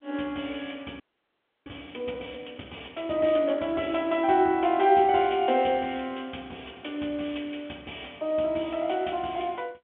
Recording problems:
phone line; 220 Hz to 3.6 kHz, G.711
audio freezing; at 1 s for 0.5 s

